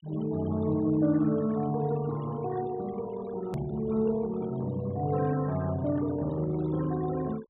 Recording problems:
low-pass filter; nothing above 3.9 kHz
denoising artefacts; signal-to-artefact ratio 19 dB
click at an edit; at 3.5 s

